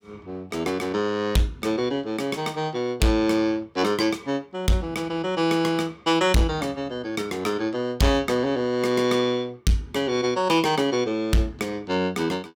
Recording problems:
distorted audio; hard clipping, signal-to-distortion ratio 12 dB

